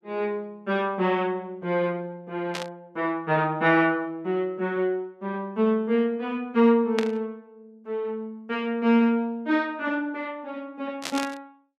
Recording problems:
static burst; at 2.5 s, at 7 s and at 11 s; peak 0 dB vs average level

